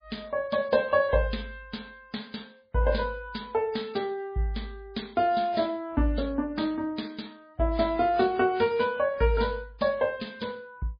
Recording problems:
codec artefacts; MP3, log-spectral distance 3 dB

